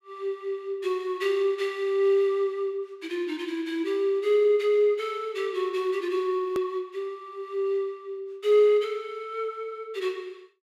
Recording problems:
click at an edit; at 6.5 s

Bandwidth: 15.5 kHz